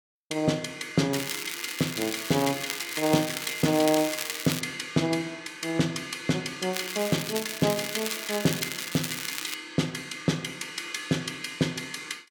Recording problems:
crackle; from 1 to 4.5 s and from 6.5 to 9.5 s; loose cable, SNR 5 dB

